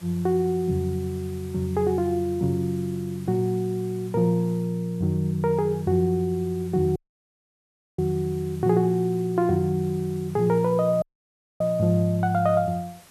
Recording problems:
hiss; slope -2 dB per octave, SNR 25 dB
dropout; at 7 s for 1 s and at 11 s for 0.5 s

